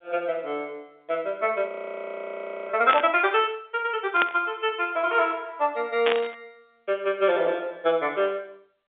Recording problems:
telephone audio; 240 Hz to 3.6 kHz, G.711
audio freezing; at 1.5 s for 1 s
static burst; at 3 s, at 4 s and at 6 s; peak +3 dB vs average level

